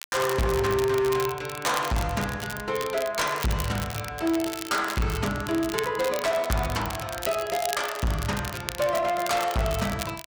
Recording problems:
distorted audio; hard clipping, signal-to-distortion ratio 8 dB
crackling; vinyl, SNR 10 dB

